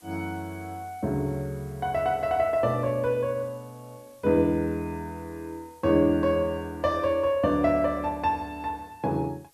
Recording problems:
hiss; slope -1 dB per octave, SNR 30 dB

